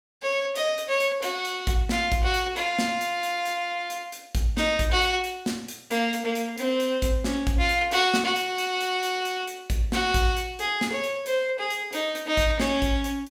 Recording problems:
none

